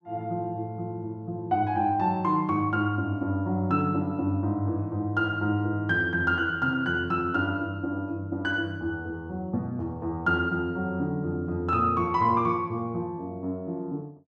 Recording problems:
none

